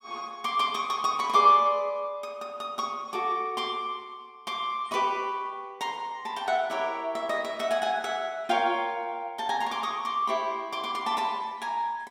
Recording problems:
none

